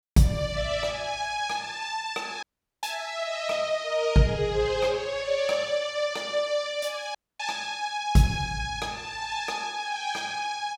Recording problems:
audio cutting out; at 2.5 s and at 7 s

